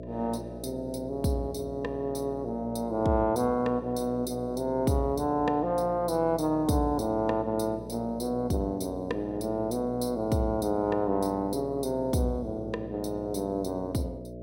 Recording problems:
mains hum; 60 Hz, harmonics up to 660 Hz, SNR 12 dB

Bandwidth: 16.5 kHz